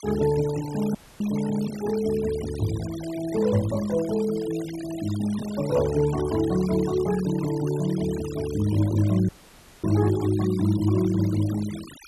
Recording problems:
noise reduction artefacts; signal-to-artefact ratio 16 dB
audio cutting out; at 1 s and at 9.5 s for 0.5 s

